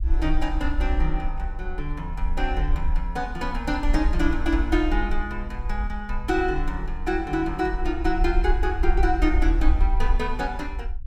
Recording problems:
rumble; below 52 Hz, SNR 1 dB

